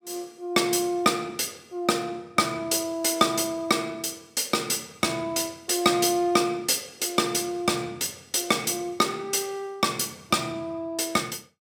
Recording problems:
none

